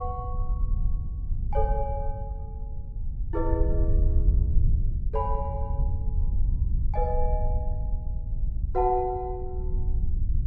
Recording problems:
rumble; below 72 Hz, SNR -2 dB

